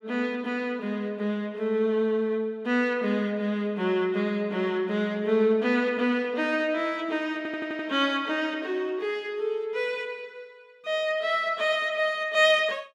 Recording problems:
audio stuttering; at 7.5 s

